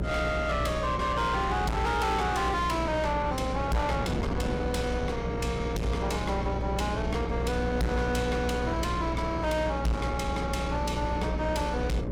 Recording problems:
distorted audio; soft clipping, signal-to-distortion ratio 6 dB
hum; 60 Hz, harmonics up to 600 Hz, SNR 5 dB
wind noise; below 490 Hz, SNR 6 dB

